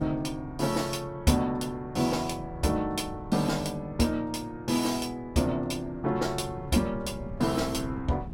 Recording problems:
wind on the microphone; below 180 Hz, SNR 16 dB

